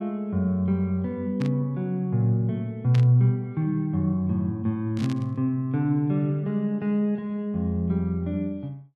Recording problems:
static burst; at 1.5 s, at 3 s and at 5 s; peak -8 dB vs average level

